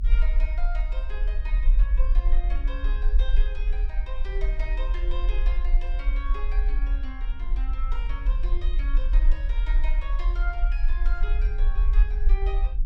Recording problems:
rumble; below 42 Hz, SNR -13 dB
wind on the microphone; below 100 Hz, SNR 6 dB

